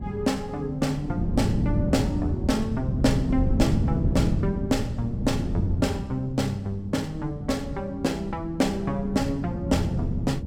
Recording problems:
wind on the microphone; below 200 Hz, SNR 1 dB

